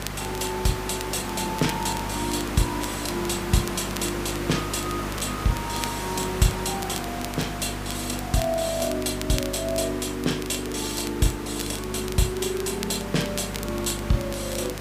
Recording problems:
hum; 50 Hz, harmonics up to 550 Hz, SNR 10 dB
hiss; slope -4 dB per octave, SNR 7 dB
crackle; vinyl, SNR 13 dB

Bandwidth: 15 kHz